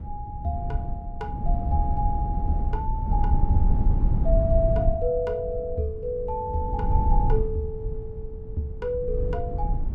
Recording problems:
rumble; below 90 Hz, SNR -2 dB

